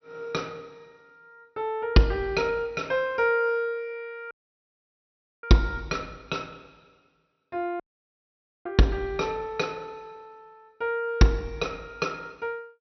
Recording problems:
treble missing; nothing above 5.9 kHz
audio cutting out; at 4.5 s for 1 s and at 8 s for 1 s

